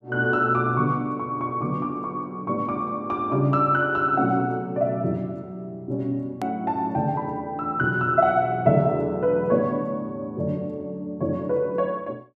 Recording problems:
edit click; at 6.5 s

